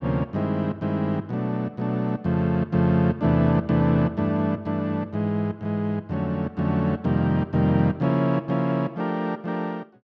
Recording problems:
none

